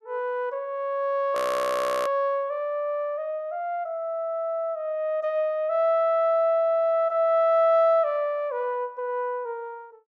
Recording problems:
frozen audio; at 1.5 s for 0.5 s

